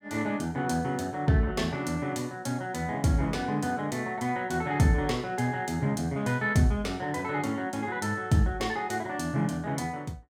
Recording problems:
none

